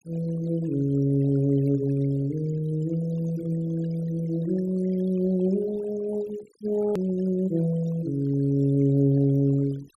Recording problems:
denoising artefacts; signal-to-artefact ratio 21 dB
edit click; at 7 s

